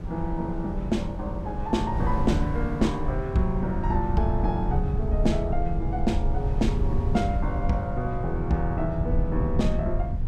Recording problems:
rumble; below 94 Hz, SNR 3 dB
wind on the microphone; below 110 Hz, SNR 6 dB

